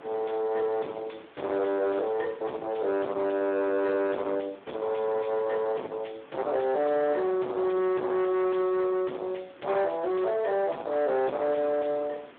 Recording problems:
telephone audio; 300 Hz to 3.5 kHz, Speex
distorted audio; soft clipping, signal-to-distortion ratio 5 dB
hiss; SNR 28 dB
wind noise; below 1.2 kHz, SNR 20 dB

